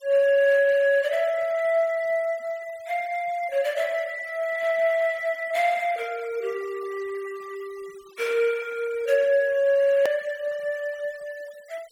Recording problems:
noise reduction artefacts; signal-to-artefact ratio 23 dB
click at an edit; at 10 s

